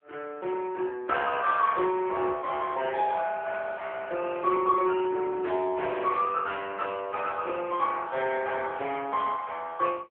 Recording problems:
phone line; 300 Hz to 3.3 kHz, AMR-NB

